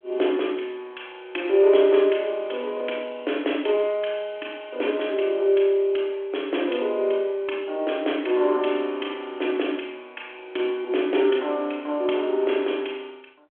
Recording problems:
telephone audio; 260 Hz to 3.4 kHz, G.726

